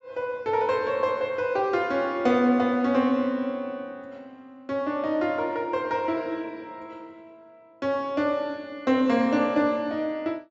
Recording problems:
treble cut off; nothing above 8 kHz

